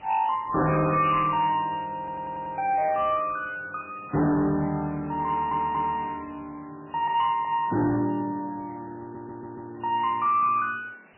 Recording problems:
lossy compression; MP3, log-spectral distance 10 dB, nothing above 2.5 kHz
distorted audio; hard clipping, signal-to-distortion ratio 10 dB
hiss; SNR 27 dB
audio stuttering; at 2 s, at 5.5 s and at 9 s

